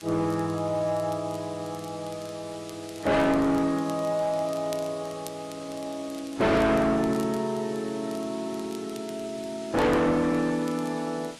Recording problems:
lossy compression; AAC, log-spectral distance 4 dB, nothing above 11.6 kHz
distorted audio; hard clipping, signal-to-distortion ratio 6 dB
hiss; slope 0 dB per octave, SNR 18 dB
crackling; vinyl, SNR 23 dB

